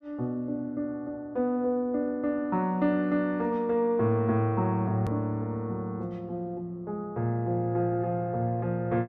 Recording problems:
hard cut with a click; at 5 s

